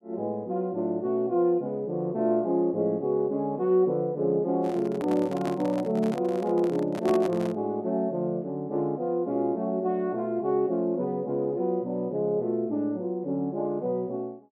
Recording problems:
microphone handling noise; from 4.5 to 7.5 s; peak -2 dB vs average level

